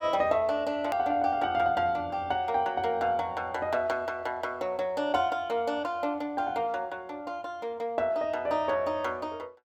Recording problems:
click at an edit; at 1 s

